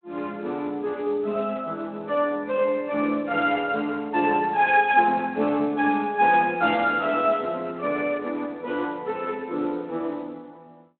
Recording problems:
phone line; 170 Hz to 3.3 kHz, Speex

